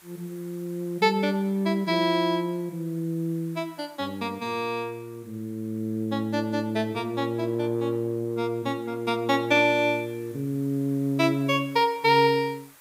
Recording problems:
hiss; SNR 27 dB

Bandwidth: 15.5 kHz